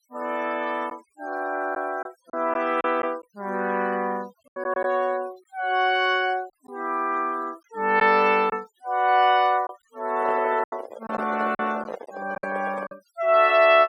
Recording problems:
noise reduction artefacts; signal-to-artefact ratio 24 dB
packet loss; 5% of the sound replaced, filled with silence
handling noise; from 10 to 13 s; peak -4 dB vs average level

